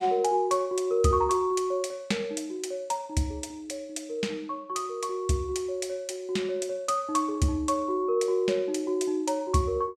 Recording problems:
none

